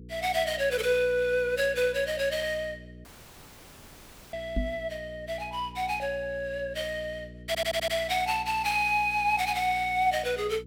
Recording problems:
hum; 60 Hz, harmonics up to 480 Hz, SNR 19 dB
dropout; at 3 s for 1.5 s
microphone thump; at 4.5 s; peak +1 dB vs average level
stutter; at 7.5 s

